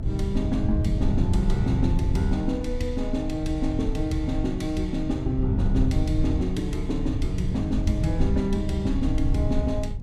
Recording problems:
low-frequency rumble; below 110 Hz, SNR 0 dB

